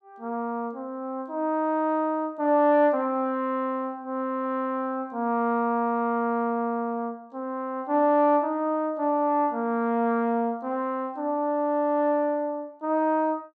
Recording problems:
none

